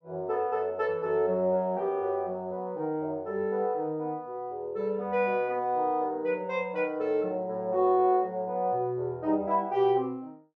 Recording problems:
none

